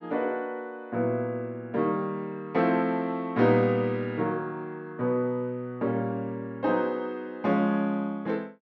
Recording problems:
none

